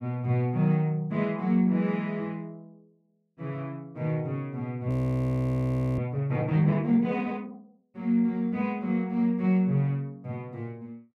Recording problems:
frozen audio; at 5 s for 1 s

